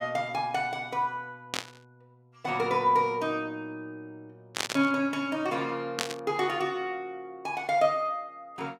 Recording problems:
burst of static; at 1.5 s, at 4.5 s and at 6 s; peak +4 dB vs average level

